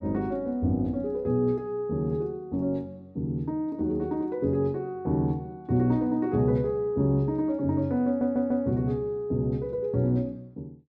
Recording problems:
stutter; at 8 s

